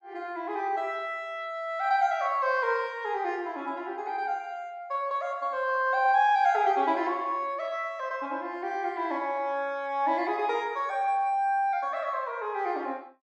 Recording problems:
none

